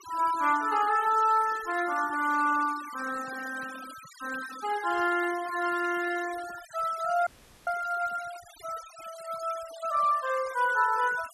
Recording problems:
denoising artefacts; signal-to-artefact ratio 17 dB
frozen audio; at 7.5 s

